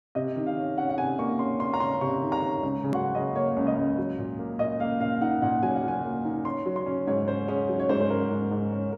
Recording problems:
edit click; at 3 s

